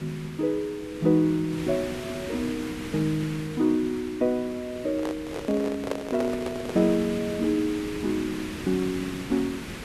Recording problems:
hiss; SNR 11 dB
handling noise; from 5 to 7 s; peak +2 dB vs average level

